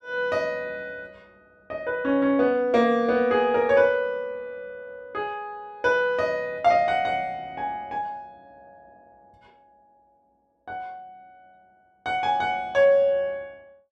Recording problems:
none

